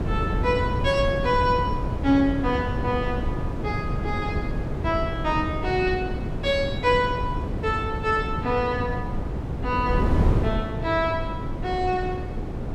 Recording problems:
wind noise; below 260 Hz, SNR 3 dB

